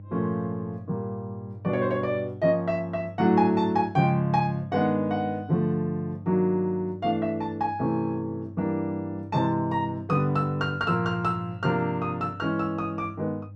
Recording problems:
hum; 50 Hz, harmonics up to 500 Hz, SNR 16 dB

